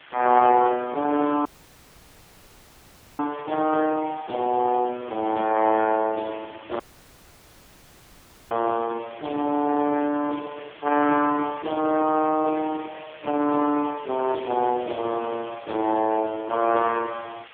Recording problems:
telephone audio; 240 Hz to 2.9 kHz, AMR-NB
background hiss; SNR 22 dB
audio cutting out; at 1.5 s for 1.5 s and at 7 s for 1.5 s

